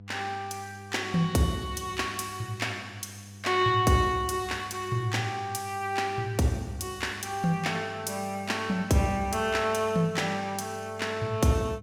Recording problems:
hum; 50 Hz, harmonics up to 500 Hz, SNR 18 dB

